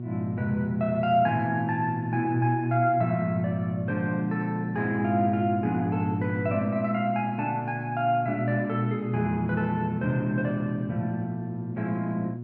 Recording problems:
hum; 60 Hz, harmonics up to 360 Hz, SNR 8 dB

